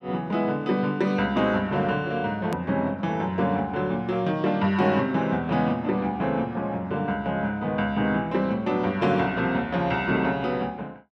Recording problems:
hard cut with a click; at 2.5 s

